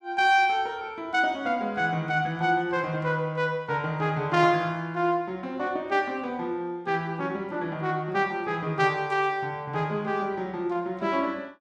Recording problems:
none

